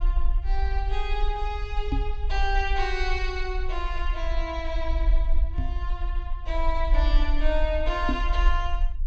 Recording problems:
treble cut off; nothing above 8 kHz
rumble; below 46 Hz, SNR -2 dB
microphone thump; at 2 s, at 5.5 s and at 8 s; peak +7 dB vs average level

